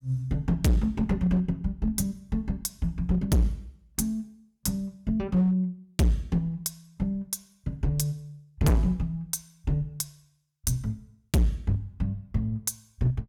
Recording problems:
distortion; hard clipping, uneven, signal-to-distortion ratio 6 dB

